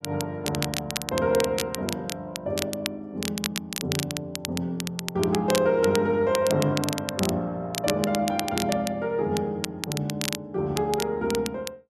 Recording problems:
crackling; vinyl, SNR 6 dB

